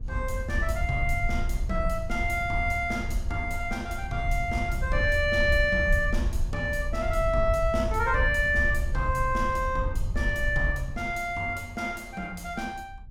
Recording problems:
wind noise; below 72 Hz, SNR 4 dB

